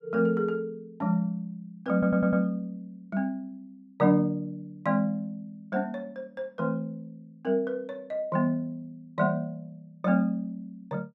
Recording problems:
audio stuttering; at 2 s

